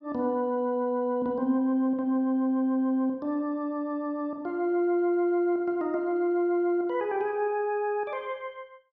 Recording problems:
none

